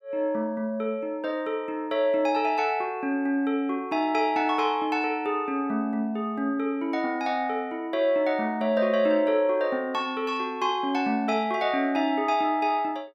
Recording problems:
none

